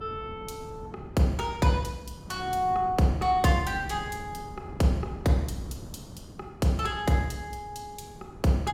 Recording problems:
wind on the microphone; below 280 Hz, SNR 16 dB

